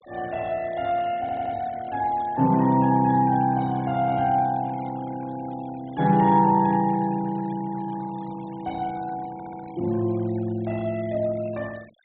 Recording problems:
low-pass filter; nothing above 4 kHz
denoising artefacts; signal-to-artefact ratio 23 dB
audio stuttering; at 1 s and at 9.5 s

